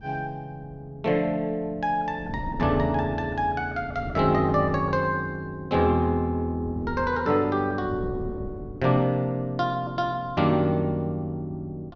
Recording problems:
wind on the microphone; below 240 Hz, SNR 16 dB

